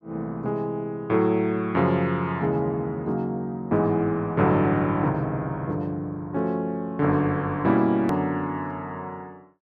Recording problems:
hard cut with a click; at 8 s

